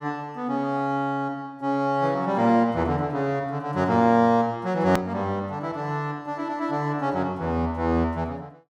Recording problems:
hard cut with a click; at 5 s

